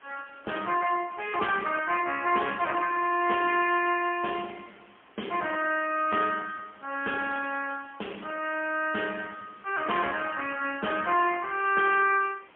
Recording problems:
phone line; 240 Hz to 3.2 kHz, AMR-NB, then MP3
background hiss; SNR 28 dB

